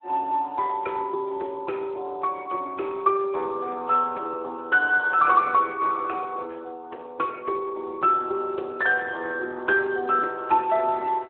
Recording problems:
telephone audio; 300 Hz to 3 kHz, Speex

